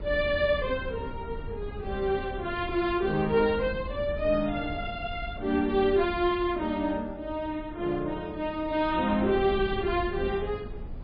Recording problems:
lossy compression; MP3, log-spectral distance 2 dB, nothing above 4.6 kHz
wind noise; below 150 Hz, SNR 12 dB

